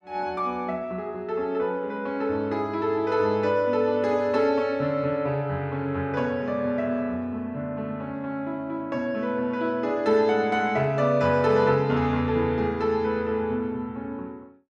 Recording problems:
none

